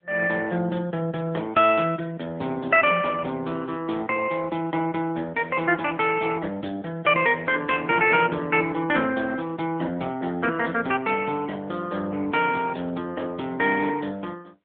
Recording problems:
telephone audio; 240 Hz to 3.5 kHz, AMR-NB

